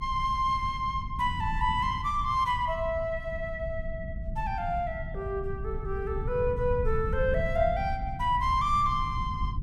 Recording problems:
rumble; below 110 Hz, SNR 7 dB

